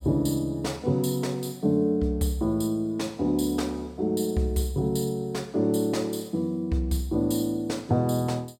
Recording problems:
none

